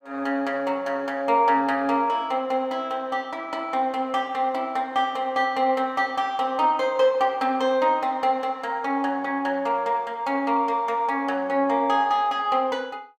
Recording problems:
none

